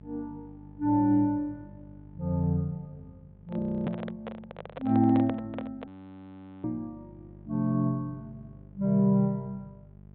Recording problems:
treble missing; nothing above 4 kHz
electrical hum; 50 Hz, harmonics up to 800 Hz, SNR 23 dB
microphone handling noise; from 3.5 to 6 s; peak -4 dB vs average level
frozen audio; at 3.5 s and at 6 s for 1 s

